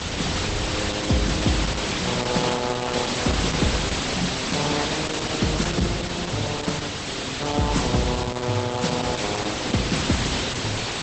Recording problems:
lossy codec; Opus, log-spectral distance 12 dB, nothing above 8.2 kHz
hiss; slope -2 dB per octave, SNR -1 dB
rumble; below 130 Hz, SNR 10 dB

